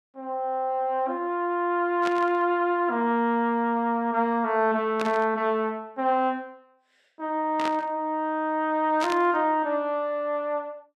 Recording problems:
burst of static; 4 times, first at 2 s; peak -4 dB vs average level

